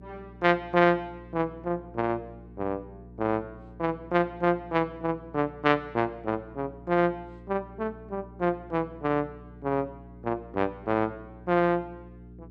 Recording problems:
hum; 60 Hz, harmonics up to 420 Hz, SNR 19 dB

